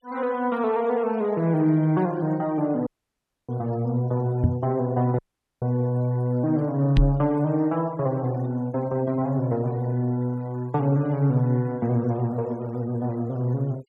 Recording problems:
noise reduction artefacts; signal-to-artefact ratio 24 dB
dropout; at 3 s for 0.5 s and at 5 s
microphone bump; at 4.5 s and at 7 s; peak +7 dB vs average level

